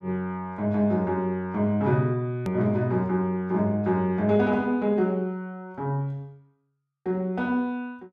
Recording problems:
edit click; at 2.5 s

